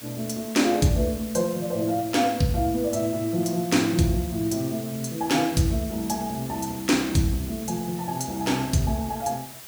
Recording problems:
background hiss; slope 0 dB per octave, SNR 14 dB

